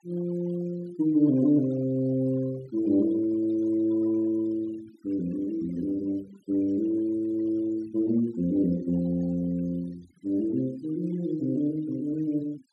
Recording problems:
noise reduction artefacts; signal-to-artefact ratio 24 dB

